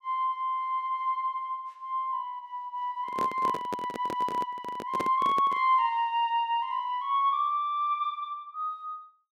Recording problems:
microphone handling noise; from 3 to 5.5 s; peak -1 dB vs average level

